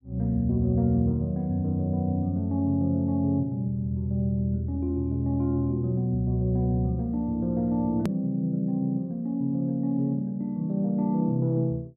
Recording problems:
edit click; at 8 s

